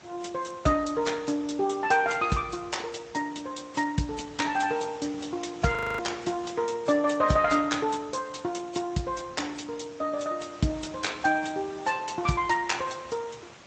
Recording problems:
lossy compression; Speex, then AAC, log-spectral distance 6 dB, nothing above 7.8 kHz
background hiss; slope -3 dB per octave, SNR 20 dB
frozen audio; at 6 s

